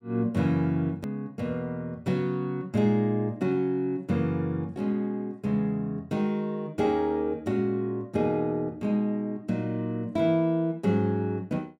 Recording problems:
click at an edit; at 1 s

